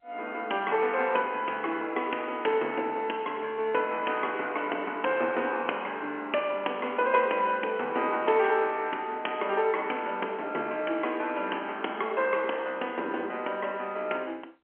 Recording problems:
phone line; 260 Hz to 3.2 kHz, G.711

